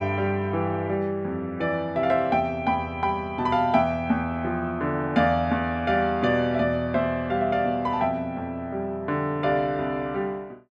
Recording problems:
none

